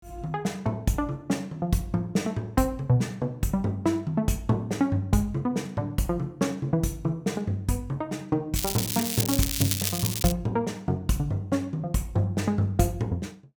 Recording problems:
crackling; from 8.5 to 10 s; loose cable, SNR 1 dB

